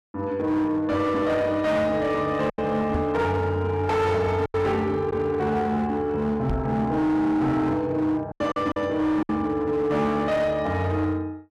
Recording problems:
distortion; hard clipping, uneven, signal-to-distortion ratio 11 dB
lost packets; 3% of the sound replaced, filled with silence
microphone bump; at 3 s and at 6.5 s; peak +1 dB vs average level

